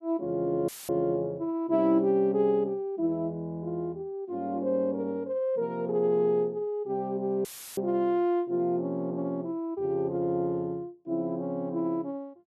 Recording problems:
dropout; at 0.5 s and at 7.5 s; filled with static

